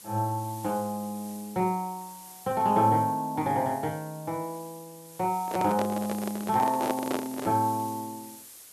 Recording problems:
hiss; slope 0 dB per octave, SNR 16 dB
microphone handling noise; from 5.5 to 7.5 s; peak +2 dB vs average level

